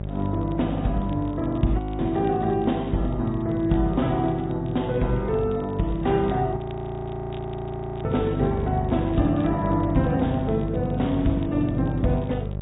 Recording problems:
low-pass filter; nothing above 3.8 kHz
codec artefacts; MP3, then Vorbis, log-spectral distance 2 dB
hum; 50 Hz, harmonics up to 800 Hz, SNR 7 dB
crackling; vinyl, SNR 30 dB
frozen audio; at 2 s and at 6.5 s for 1.5 s

